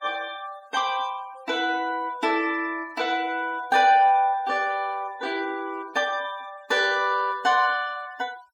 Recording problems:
denoising artefacts; signal-to-artefact ratio 24 dB

